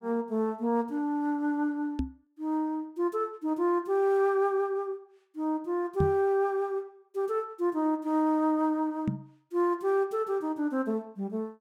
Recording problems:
microphone bump; at 2 s, at 6 s and at 9 s; peak +4 dB vs average level

